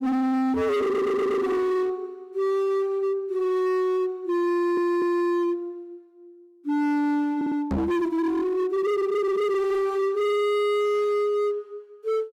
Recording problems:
distorted audio; hard clipping, signal-to-distortion ratio 7 dB
stutter; at 1 s, at 4.5 s and at 7.5 s
microphone bump; at 7.5 s; peak +1 dB vs average level

